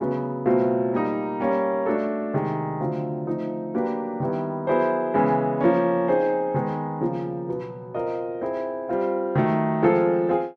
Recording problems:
none

